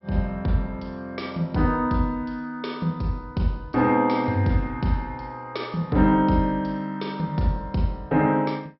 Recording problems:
treble missing; nothing above 5.3 kHz

